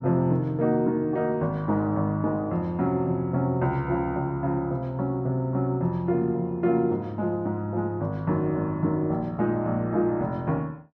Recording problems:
none

